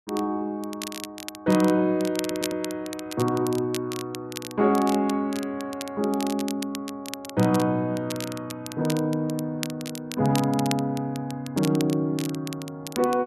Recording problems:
crackling; vinyl, SNR 12 dB
audio stuttering; at 2 s

